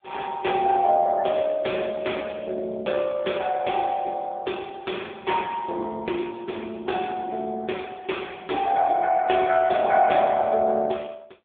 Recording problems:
telephone audio; 260 Hz to 3.4 kHz, AMR-NB

